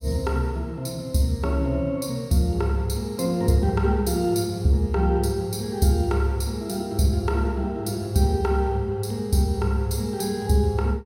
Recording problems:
none

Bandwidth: 16 kHz